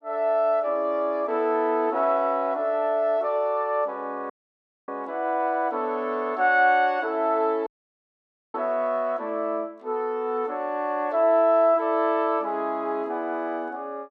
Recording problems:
dropout; at 4.5 s for 0.5 s and at 7.5 s for 1 s

